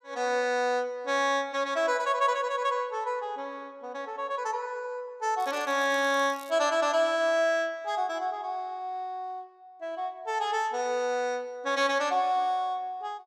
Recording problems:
crackling; from 5.5 to 6.5 s; loose cable, SNR 22 dB

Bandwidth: 14.5 kHz